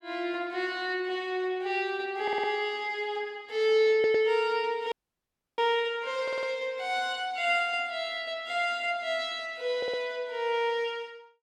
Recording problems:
stutter; 4 times, first at 2 s
audio cutting out; at 5 s for 0.5 s

